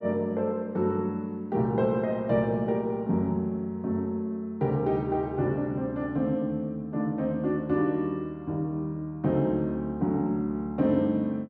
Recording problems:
none

